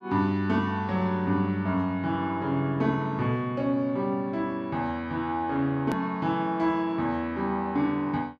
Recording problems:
hard cut with a click; at 6 s

